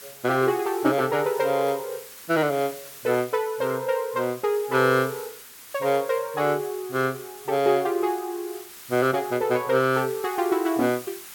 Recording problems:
hiss; slope +1 dB per octave, SNR 17 dB

